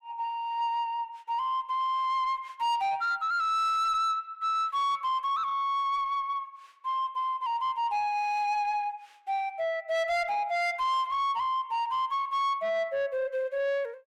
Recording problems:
distorted audio; soft clipping, signal-to-distortion ratio 11 dB

